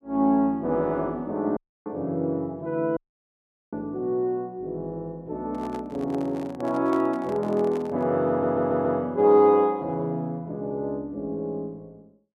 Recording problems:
dropout; at 1.5 s and at 3 s for 1 s
microphone handling noise; from 5.5 to 8 s; peak -7 dB vs average level
stutter; at 8.5 s

